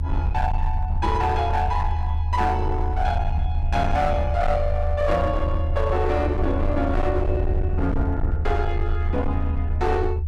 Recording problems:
distorted audio; hard clipping, signal-to-distortion ratio 10 dB
low-frequency rumble; below 80 Hz, strongest tone 26 Hz, SNR 0 dB

